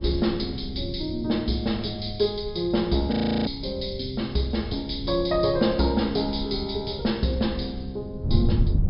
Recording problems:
low-pass filter; nothing above 5.5 kHz
wind on the microphone; below 120 Hz, SNR 8 dB
frozen audio; at 3 s

